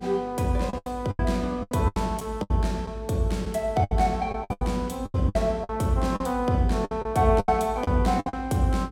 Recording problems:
mains hum; 50 Hz, harmonics up to 450 Hz, SNR 22 dB
lost packets; 14% of the sound replaced, filled with the last packet

